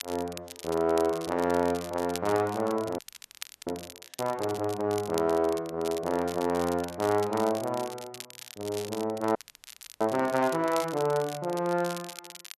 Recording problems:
crackle; vinyl, SNR 14 dB
audio freezing; at 3 s for 0.5 s and at 9.5 s for 0.5 s

